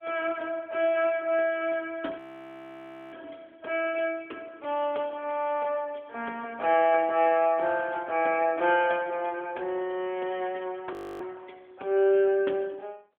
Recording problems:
telephone audio; 280 Hz to 3.5 kHz, AMR-NB
audio freezing; at 2 s for 1 s and at 11 s

